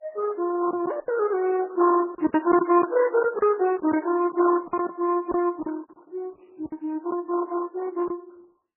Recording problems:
lossy compression; Opus, then MP3, log-spectral distance 3 dB, nothing above 2.4 kHz
lost packets; 8% of the sound replaced, filled with silence

